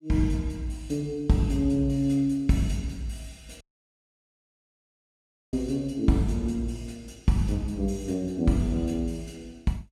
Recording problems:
dropout; at 3.5 s for 2 s

